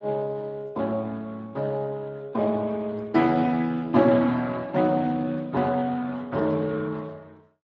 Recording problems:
lossy compression; Speex, log-spectral distance 3 dB

